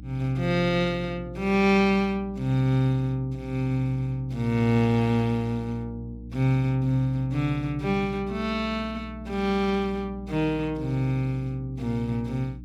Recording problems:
hum; 60 Hz, harmonics up to 300 Hz, SNR 15 dB

